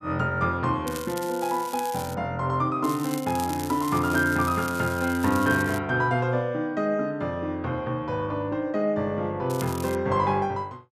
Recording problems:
crackling; from 1 to 2 s, from 3 to 6 s and at 9.5 s; loose cable, SNR 14 dB

